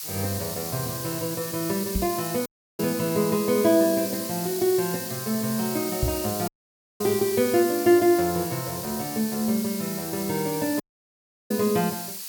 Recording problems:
hiss; slope +5 dB per octave, SNR 7 dB
knock on the microphone; at 2 s and at 6 s; peak +3 dB vs average level
dropout; at 2.5 s, at 6.5 s for 0.5 s and at 11 s for 0.5 s

